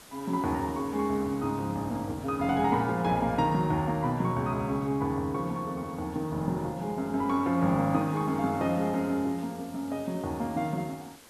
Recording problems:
background hiss; slope -2 dB per octave, SNR 22 dB

